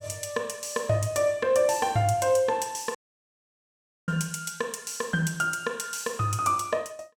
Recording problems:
dropout; at 3 s for 1 s

